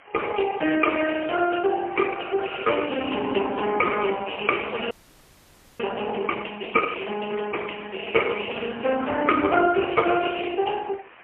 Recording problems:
telephone audio; 280 Hz to 3.1 kHz, AMR-NB, then MP3
background hiss; SNR 25 dB
audio freezing; at 5 s for 1 s

